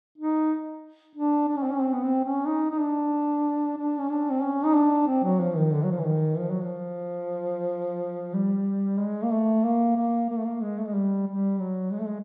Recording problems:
none

